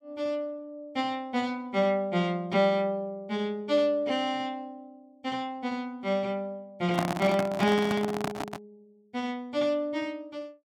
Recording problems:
handling noise; from 7 to 8.5 s; peak +3 dB vs average level

